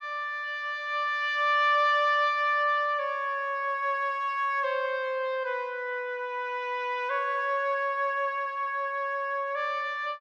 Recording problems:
none

